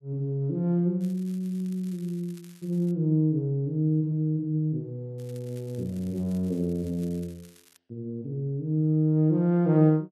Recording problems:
crackling; from 1 to 3 s and from 5 to 8 s; loose cable, SNR 28 dB

